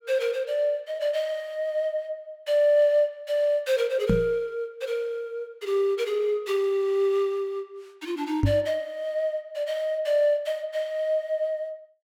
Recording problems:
microphone thump; at 4 s and at 8.5 s; peak +7 dB vs average level

